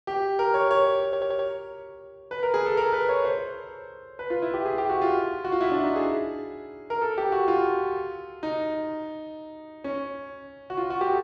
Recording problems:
stutter; at 1 s

